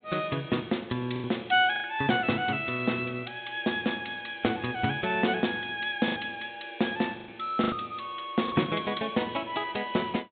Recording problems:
treble missing; nothing above 4 kHz
packet loss; 4% of the sound replaced, filled with the last packet

